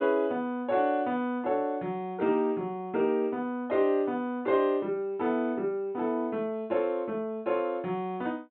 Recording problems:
low-pass filter; nothing above 4 kHz

